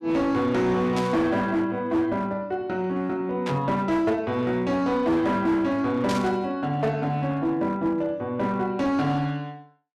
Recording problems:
distortion; hard clipping, uneven, signal-to-distortion ratio 12 dB
static burst; at 1 s, at 3.5 s and at 6 s; peak -4 dB vs average level

